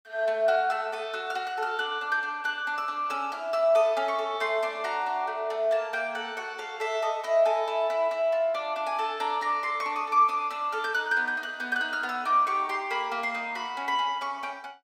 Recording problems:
none

